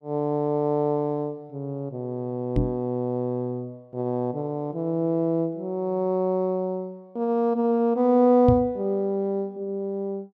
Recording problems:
microphone thump; at 2.5 s and at 8.5 s; peak +6 dB vs average level

